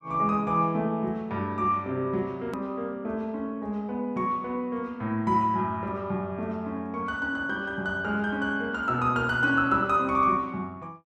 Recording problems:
edit click; at 2.5 s

